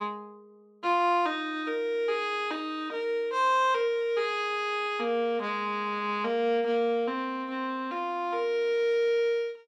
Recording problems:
none

